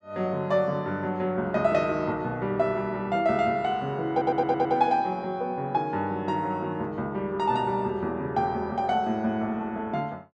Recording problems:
audio stuttering; at 4 s

